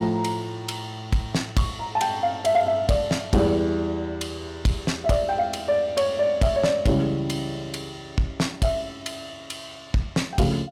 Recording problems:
distortion; soft clipping, signal-to-distortion ratio 11 dB

